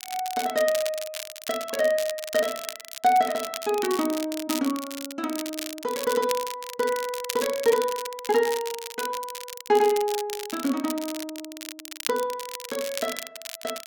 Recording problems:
crackling; vinyl, SNR 9 dB

